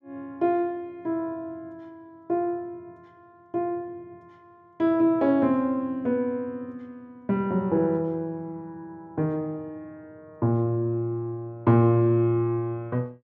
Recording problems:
none

